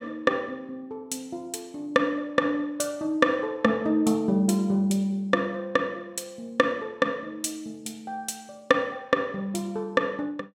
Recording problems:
none

